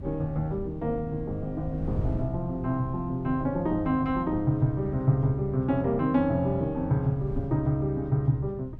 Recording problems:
wind noise; below 150 Hz, SNR 12 dB

